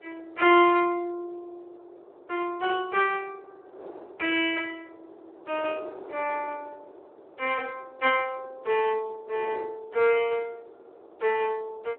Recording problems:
telephone audio; 320 Hz to 3.1 kHz, Speex
wind noise; below 670 Hz, SNR 20 dB

